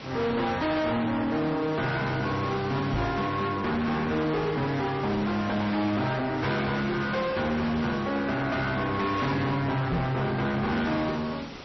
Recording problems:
lossy codec; MP3, log-spectral distance 4 dB, nothing above 5.7 kHz
distorted audio; soft clipping, signal-to-distortion ratio 7 dB
hiss; slope -4 dB per octave, SNR 14 dB
microphone thump; at 3 s and at 10 s; peak +5 dB vs average level

